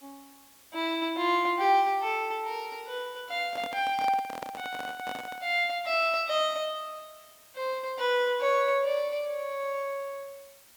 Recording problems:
background hiss; slope 0 dB per octave, SNR 25 dB
microphone handling noise; from 3.5 to 5.5 s; peak -6 dB vs average level

